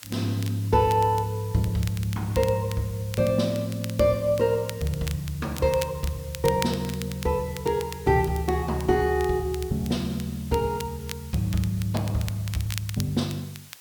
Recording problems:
hiss; slope +1 dB per octave, SNR 20 dB
crackle; vinyl, SNR 15 dB

